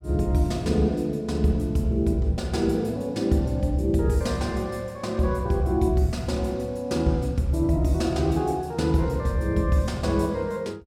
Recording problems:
none

